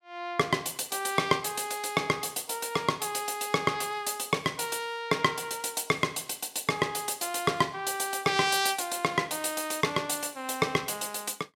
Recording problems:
none

